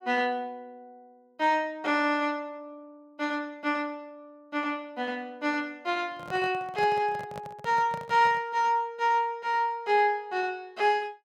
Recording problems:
handling noise; from 6 to 8.5 s; peak -7 dB vs average level

